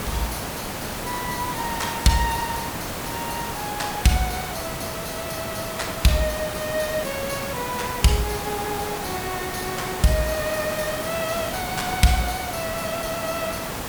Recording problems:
hiss; slope -4 dB per octave, SNR 3 dB

